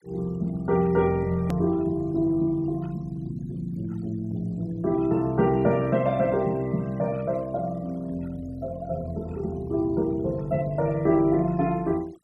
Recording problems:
noise reduction artefacts; signal-to-artefact ratio 26 dB
hard cut with a click; at 1.5 s

